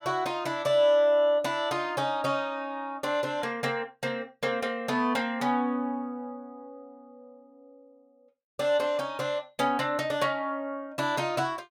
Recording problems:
none

